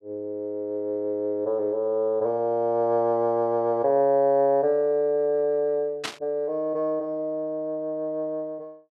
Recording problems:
burst of static; at 6 s; peak -1 dB vs average level

